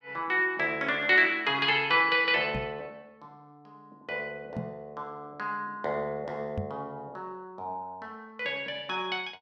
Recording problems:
knock on the microphone; at 2.5 s, at 4.5 s and at 6.5 s; peak -3 dB vs average level

